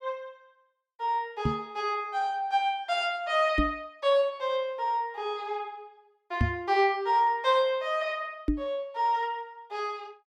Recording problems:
microphone bump; 4 times, first at 1.5 s; peak +6 dB vs average level

